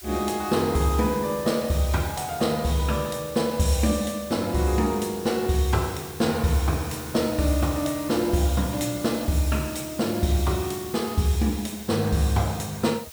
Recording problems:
hiss; slope +2 dB per octave, SNR 15 dB

